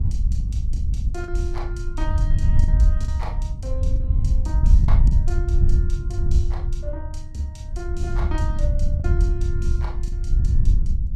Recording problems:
wind on the microphone; below 70 Hz, SNR -10 dB
lost packets; 3% of the sound replaced, filled with the last packet

